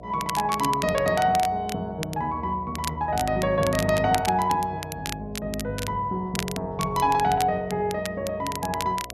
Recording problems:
hum; 60 Hz, harmonics up to 720 Hz, SNR 19 dB
crackling; vinyl, SNR 11 dB

